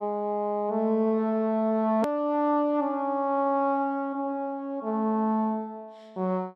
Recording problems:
hard cut with a click; at 2 s

